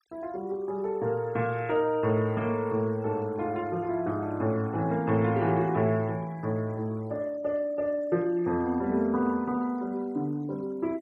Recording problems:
noise reduction artefacts; signal-to-artefact ratio 27 dB

